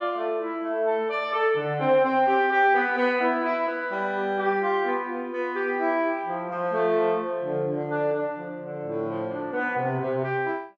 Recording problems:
none

